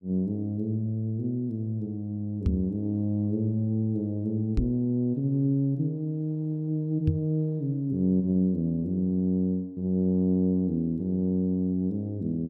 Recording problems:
knock on the microphone; at 2.5 s, at 4.5 s and at 7 s; peak +5 dB vs average level

